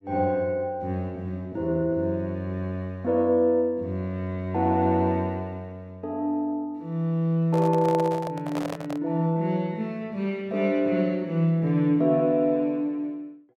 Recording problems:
microphone handling noise; from 7.5 to 9 s; peak -4 dB vs average level

